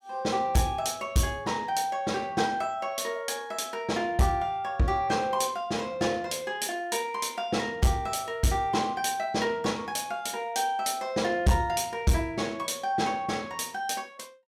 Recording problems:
distortion; soft clipping, signal-to-distortion ratio 11 dB

